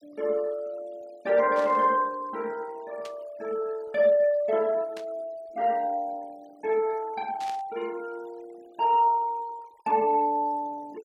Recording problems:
noise reduction artefacts; signal-to-artefact ratio 24 dB
static burst; 4 times, first at 1.5 s; peak -11 dB vs average level

